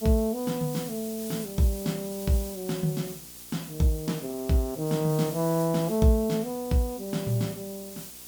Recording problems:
hum; 60 Hz, harmonics up to 960 Hz, SNR 28 dB
hiss; SNR 12 dB

